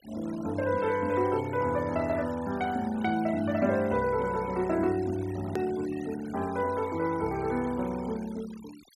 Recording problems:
denoising artefacts; signal-to-artefact ratio 19 dB
click at an edit; at 5.5 s

